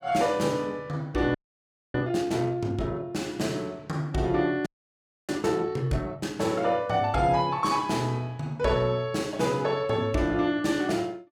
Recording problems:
frozen audio; at 1.5 s for 0.5 s and at 4.5 s for 0.5 s

